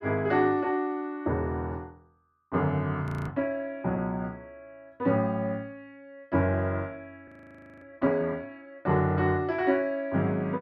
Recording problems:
audio freezing; at 3 s and at 7.5 s for 0.5 s

